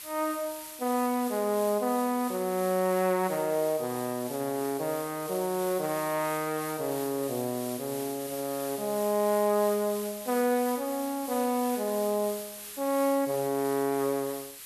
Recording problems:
background hiss; slope +2 dB per octave, SNR 11 dB

